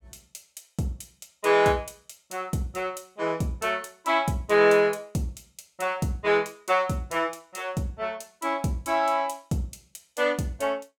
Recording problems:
none

